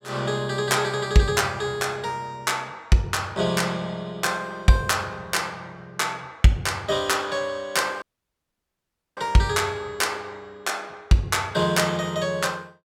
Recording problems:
audio cutting out; at 8 s for 1 s

